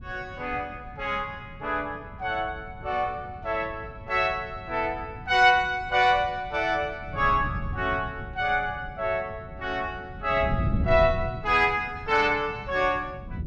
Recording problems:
wind on the microphone; below 170 Hz, SNR 12 dB

